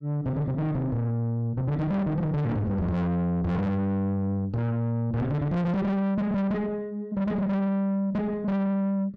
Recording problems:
distortion; soft clipping, signal-to-distortion ratio 6 dB

